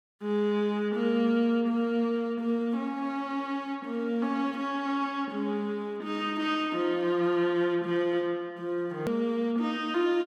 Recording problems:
hard cut with a click; at 9 s

